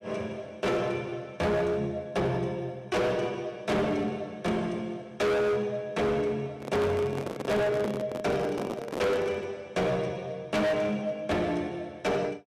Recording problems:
distorted audio; hard clipping, signal-to-distortion ratio 6 dB
handling noise; from 6.5 to 9.5 s; peak +1 dB vs average level

